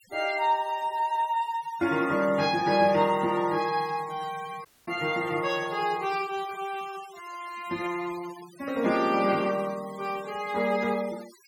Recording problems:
noise reduction artefacts; signal-to-artefact ratio 19 dB
audio cutting out; at 4.5 s

